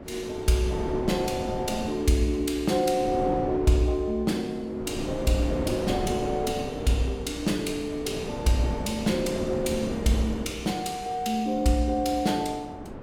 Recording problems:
wind noise; below 510 Hz, SNR 8 dB

